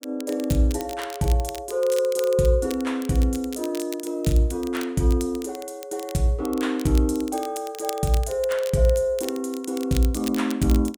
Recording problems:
crackle; vinyl, SNR 16 dB

